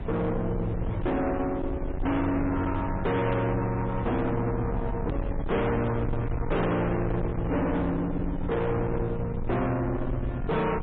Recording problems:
treble cut off; nothing above 4 kHz
codec artefacts; MP3, log-spectral distance 2 dB
distorted audio; soft clipping, signal-to-distortion ratio 6 dB
low-frequency rumble; below 300 Hz, SNR 5 dB
edit click; at 5 s

